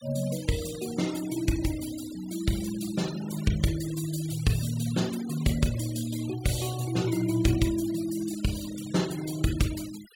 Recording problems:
noise reduction artefacts; signal-to-artefact ratio 14 dB

